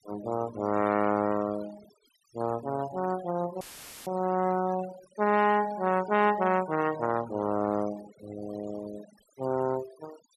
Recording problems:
denoising artefacts; signal-to-artefact ratio 16 dB
audio cutting out; at 3.5 s; filled with static

